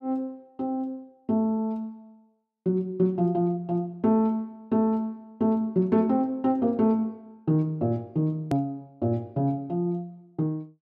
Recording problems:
hard cut with a click; at 8.5 s

